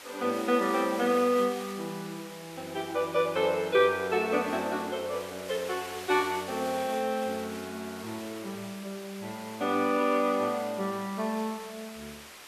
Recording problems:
hiss; SNR 14 dB

